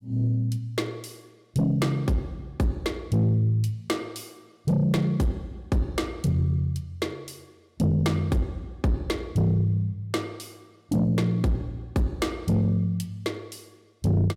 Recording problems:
distortion; soft clipping, signal-to-distortion ratio 11 dB

